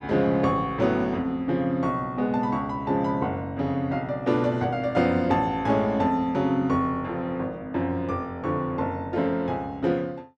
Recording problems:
none

